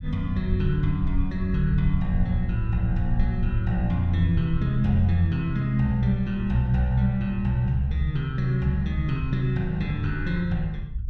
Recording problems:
low-frequency rumble; below 70 Hz, SNR 8 dB

